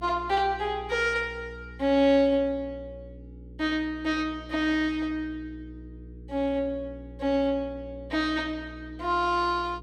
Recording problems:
hum; 60 Hz, harmonics up to 480 Hz, SNR 18 dB

